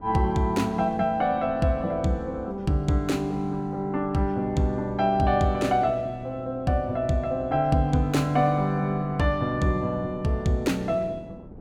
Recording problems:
wind noise; below 340 Hz, SNR 20 dB

